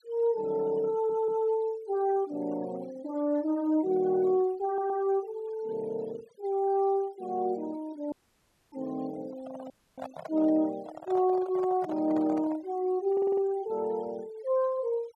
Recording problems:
noise reduction artefacts; signal-to-artefact ratio 23 dB
stutter; at 1 s, at 4.5 s and at 13 s
dropout; at 8 s for 0.5 s and at 9.5 s
microphone handling noise; from 9 to 13 s; peak -7 dB vs average level

